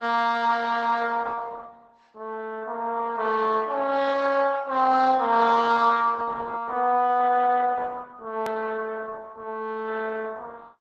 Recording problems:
lossy compression; Opus, log-spectral distance 3 dB, nothing above 14.1 kHz
edit click; at 8.5 s

